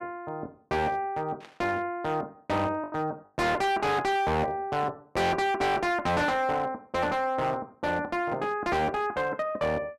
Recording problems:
distortion; hard clipping, signal-to-distortion ratio 7 dB
packet loss; 1.1% of the sound replaced, filled with the last packet
static burst; at 1.5 s; peak -15 dB vs average level

